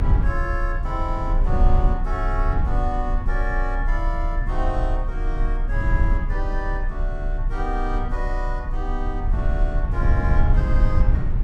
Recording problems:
rumble; below 62 Hz, strongest tone 30 Hz, SNR -5 dB

